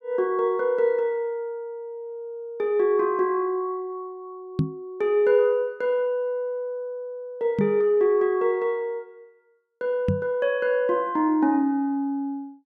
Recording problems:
microphone bump; at 4.5 s, at 7.5 s and at 10 s; peak +5 dB vs average level

